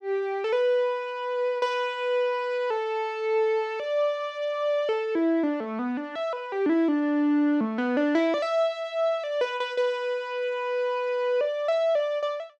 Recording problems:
none

